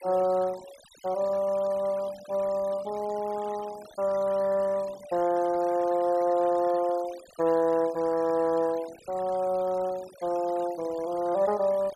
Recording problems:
noise reduction artefacts; signal-to-artefact ratio 21 dB

